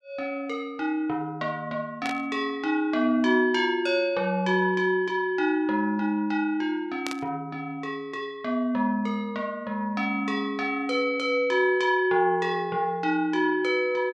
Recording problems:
burst of static; at 2 s and at 7 s; peak -3 dB vs average level

